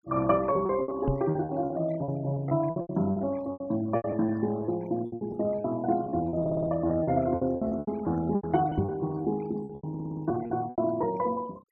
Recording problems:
noise reduction artefacts; signal-to-artefact ratio 22 dB
lost packets; 16% of the sound replaced, filled with repeated pitch periods
microphone thump; at 1 s and at 9 s; peak +4 dB vs average level
audio stuttering; at 6.5 s and at 10 s

